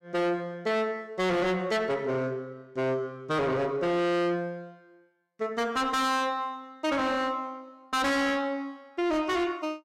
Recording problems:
distorted audio; soft clipping, signal-to-distortion ratio 6 dB

